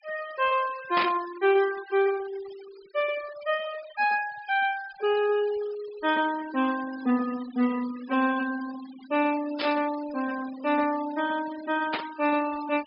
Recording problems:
low-pass filter; nothing above 5.5 kHz
denoising artefacts; signal-to-artefact ratio 17 dB
burst of static; at 1 s, at 9.5 s and at 12 s; peak +2 dB vs average level

